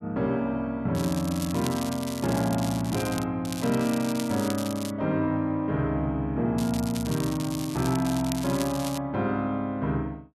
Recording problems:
crackle; from 1 to 3 s, from 3.5 to 5 s and from 6.5 to 9 s; loose cable, SNR 11 dB

